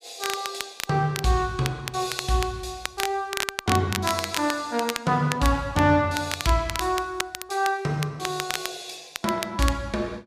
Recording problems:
crackling; vinyl, SNR 7 dB

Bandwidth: 14.5 kHz